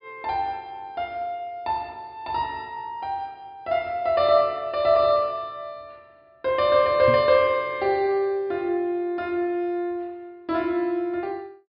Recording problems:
treble missing; nothing above 5.5 kHz
knock on the microphone; at 7 s; peak -2 dB vs average level

